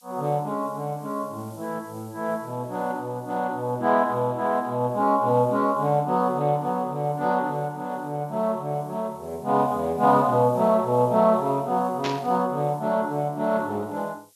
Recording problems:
codec artefacts; Speex, log-spectral distance 2 dB
hiss; SNR 29 dB
burst of static; at 12 s; peak -1 dB vs average level

